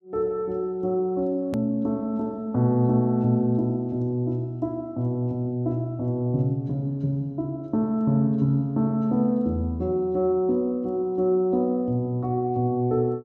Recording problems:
hard cut with a click; at 1.5 s

